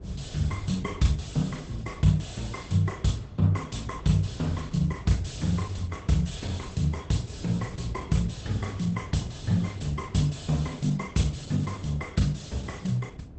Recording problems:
lossy codec; Opus, log-spectral distance 4 dB, nothing above 8.2 kHz
rumble; below 110 Hz, SNR 15 dB
wind on the microphone; below 400 Hz, SNR 21 dB

